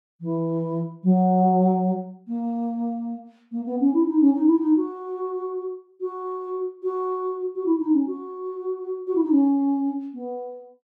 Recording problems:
none

